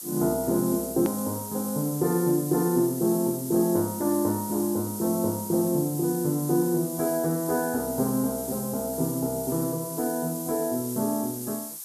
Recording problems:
background hiss; SNR 8 dB
click at an edit; at 1 s

